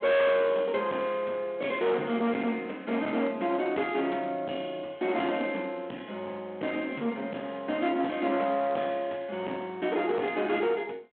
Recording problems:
phone line; 580 Hz to 3.6 kHz, G.726
distorted audio; hard clipping, uneven, signal-to-distortion ratio 7 dB

